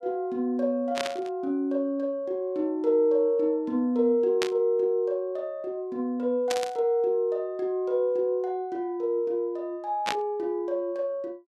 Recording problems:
static burst; 4 times, first at 1 s; peak +2 dB vs average level

